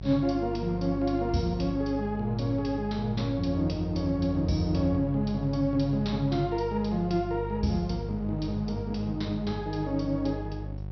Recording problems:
low-pass filter; nothing above 5.9 kHz
electrical hum; 50 Hz, harmonics up to 750 Hz, SNR 8 dB

